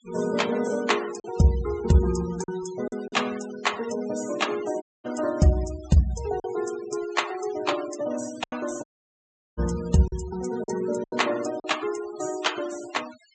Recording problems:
treble missing; nothing above 8 kHz
denoising artefacts; signal-to-artefact ratio 16 dB
lost packets; 4% of the sound replaced, filled with silence
audio cutting out; at 5 s and at 9 s for 0.5 s

